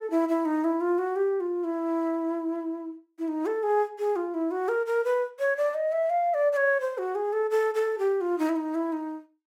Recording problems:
none

